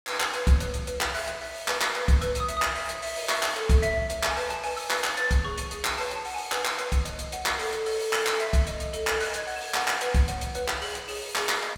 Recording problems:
none

